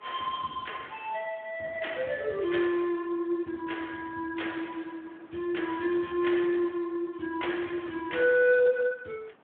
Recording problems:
phone line; 170 Hz to 3.5 kHz, Speex
wind noise; below 1.6 kHz, SNR 26 dB

